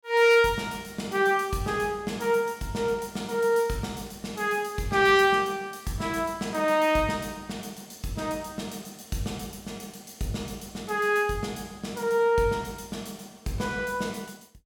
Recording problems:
none

